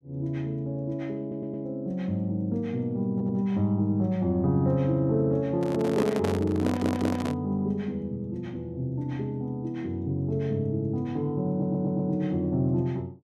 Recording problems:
audio stuttering; 4 times, first at 1 s
handling noise; from 5.5 to 7.5 s; peak +2 dB vs average level

